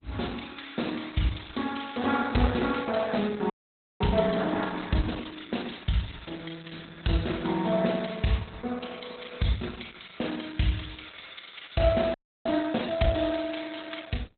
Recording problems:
lossy codec; Opus, log-spectral distance 9 dB, nothing above 4 kHz
frozen audio; at 3.5 s for 0.5 s and at 12 s

